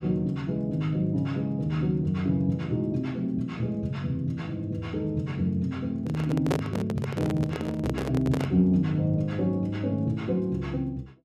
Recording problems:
handling noise; from 6 to 8.5 s; peak +4 dB vs average level

